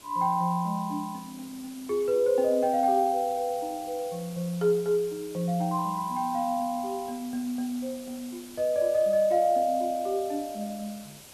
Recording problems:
background hiss; SNR 19 dB

